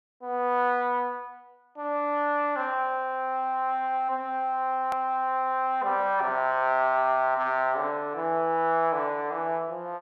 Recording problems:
hard cut with a click; at 5 s

